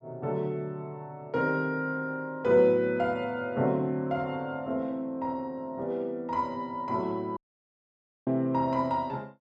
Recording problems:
dropout; at 7.5 s for 1 s

